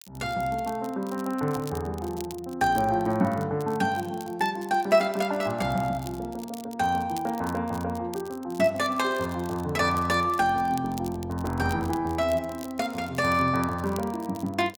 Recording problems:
crackling; vinyl, SNR 20 dB

